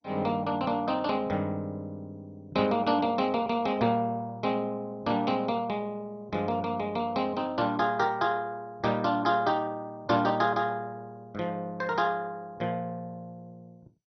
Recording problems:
lossy codec; MP2, log-spectral distance 2 dB, nothing above 5.8 kHz

